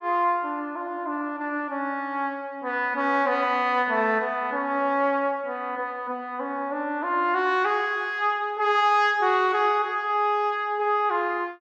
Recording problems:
none

